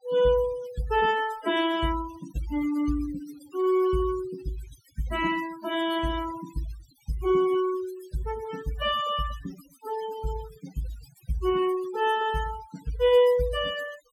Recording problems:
noise reduction artefacts; signal-to-artefact ratio 14 dB

